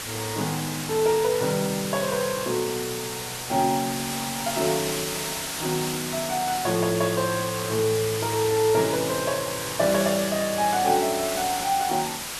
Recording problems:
hiss; slope 0 dB per octave, SNR 5 dB

